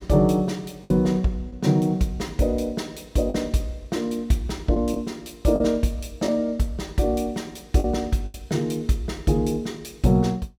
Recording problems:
lost packets; 3% of the sound replaced, filled with the last packet

